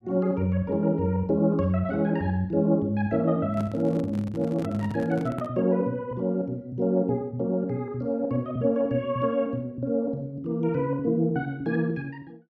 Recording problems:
handling noise; from 3.5 to 5.5 s; peak -3 dB vs average level

